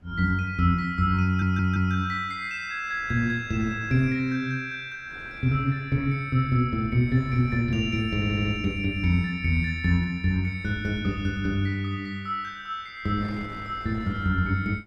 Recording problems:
wind on the microphone; below 600 Hz, SNR 24 dB
audio stuttering; at 1.5 s and at 8 s

